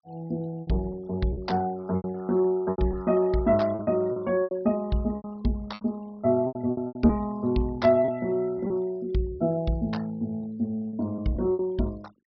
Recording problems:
treble missing; nothing above 5.5 kHz
noise reduction artefacts; signal-to-artefact ratio 25 dB
packet loss; 10% of the sound replaced, filled with repeated pitch periods

